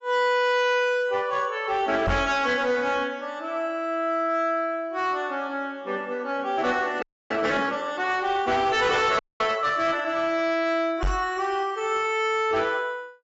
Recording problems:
codec artefacts; AAC, log-spectral distance 2 dB, nothing above 7.3 kHz
distortion; hard clipping, signal-to-distortion ratio 12 dB
knock on the microphone; at 2 s and at 11 s; peak +2 dB vs average level
audio freezing; at 7 s and at 9 s

